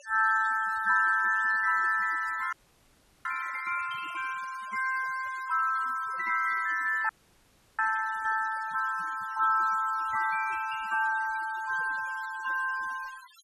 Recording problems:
denoising artefacts; signal-to-artefact ratio 20 dB
frozen audio; at 2.5 s for 0.5 s and at 7 s for 0.5 s

